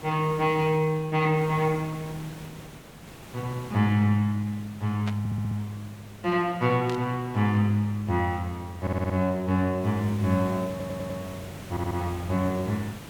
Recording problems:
background hiss; slope -5 dB per octave, SNR 17 dB
static burst; at 5 s and at 7 s; peak -6 dB vs average level
stutter; 4 times, first at 5 s

